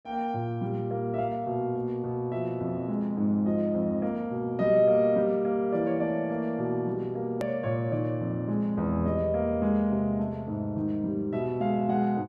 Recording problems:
hard cut with a click; at 7.5 s

